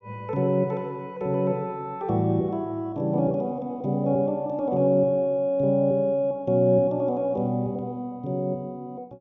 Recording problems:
none

